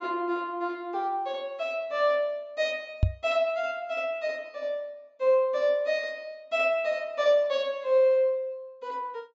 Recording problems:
low-pass filter; nothing above 8 kHz
microphone thump; at 3 s; peak +8 dB vs average level

